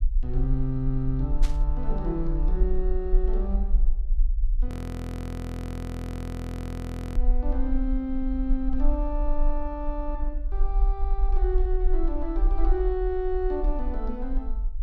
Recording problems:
low-frequency rumble; below 44 Hz, strongest tone 22 Hz, SNR -3 dB
burst of static; at 1.5 s; peak -3 dB vs average level
audio freezing; at 4.5 s for 2.5 s

